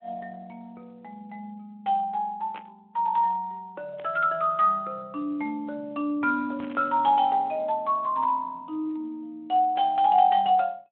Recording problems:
phone line; 260 Hz to 3.5 kHz, Speex
static burst; at 2.5 s, at 4 s and at 6.5 s; peak -13 dB vs average level

